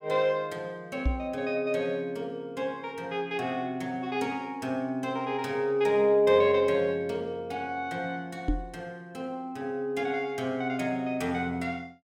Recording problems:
microphone thump; at 1 s and at 8.5 s; peak +5 dB vs average level

